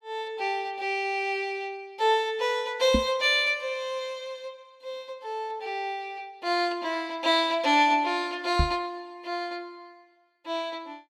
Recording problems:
microphone thump; at 3 s and at 8.5 s; peak +5 dB vs average level

